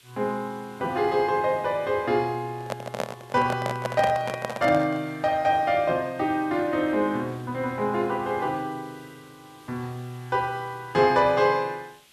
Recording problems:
hiss; SNR 28 dB
handling noise; from 2.5 to 5 s; peak +1 dB vs average level

